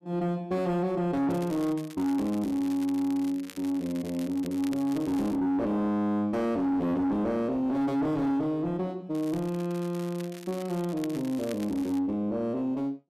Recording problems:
distortion; soft clipping, signal-to-distortion ratio 9 dB
crackling; from 1.5 to 5.5 s and from 9 to 12 s; loose cable, SNR 20 dB

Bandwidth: 14 kHz